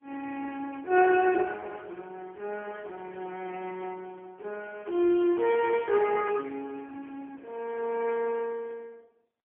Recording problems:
phone line; 300 Hz to 3.2 kHz, AMR-NB, then MP3

